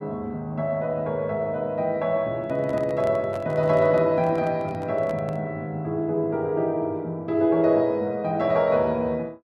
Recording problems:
handling noise; from 2.5 to 5.5 s; peak -10 dB vs average level

